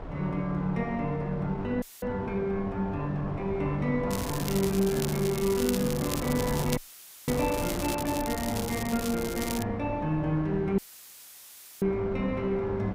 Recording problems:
wind on the microphone; below 650 Hz, SNR 8 dB
audio cutting out; at 2 s, at 7 s for 0.5 s and at 11 s for 1 s; filled with static
crackling; from 4 to 9.5 s; loose cable, SNR 8 dB

